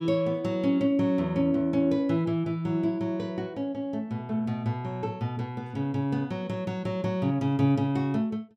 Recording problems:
none

